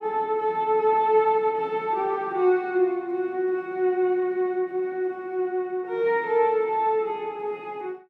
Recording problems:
none

